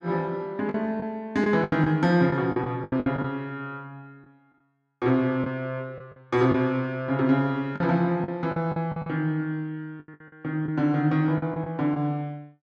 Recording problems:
packet loss; 9% of the sound replaced, filled with the last packet

